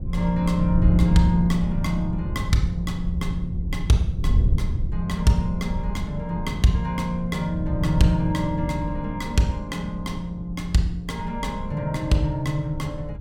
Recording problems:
wind noise; below 110 Hz, SNR 4 dB

